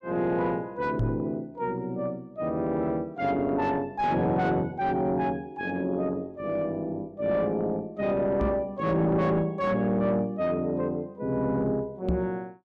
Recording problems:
distortion; soft clipping, signal-to-distortion ratio 10 dB
knock on the microphone; at 1 s, at 8.5 s and at 12 s; peak +4 dB vs average level

